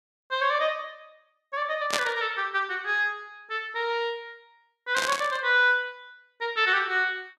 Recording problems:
static burst; at 2 s and at 5 s; peak +4 dB vs average level

